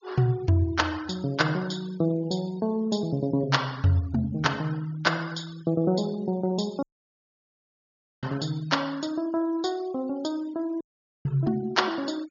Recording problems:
treble cut off; nothing above 7 kHz
noise reduction artefacts; signal-to-artefact ratio 23 dB
audio cutting out; at 7 s for 1.5 s and at 11 s

